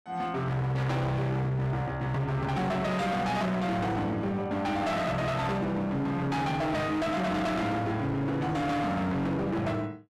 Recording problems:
distorted audio; hard clipping, signal-to-distortion ratio 7 dB

